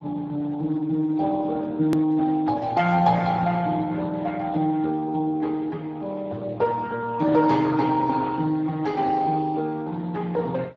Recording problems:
codec artefacts; Speex, log-spectral distance 3 dB, nothing above 13.1 kHz
edit click; at 2 s

